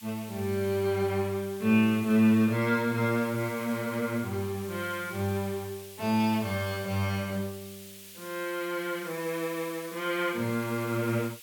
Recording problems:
hiss; SNR 17 dB

